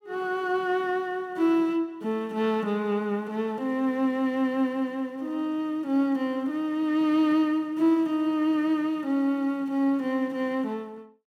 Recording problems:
none

